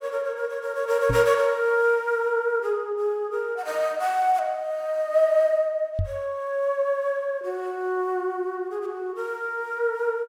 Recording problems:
microphone thump; at 1 s and at 6 s; peak +2 dB vs average level

